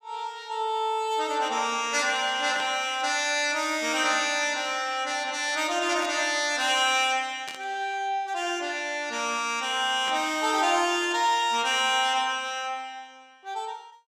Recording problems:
static burst; 4 times, first at 2.5 s; peak -8 dB vs average level

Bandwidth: 16.5 kHz